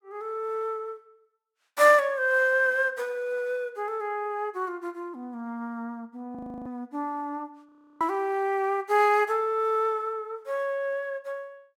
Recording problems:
audio freezing; at 6.5 s and at 7.5 s

